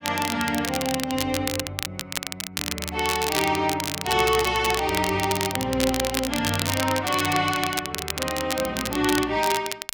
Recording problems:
crackle; vinyl, SNR 5 dB

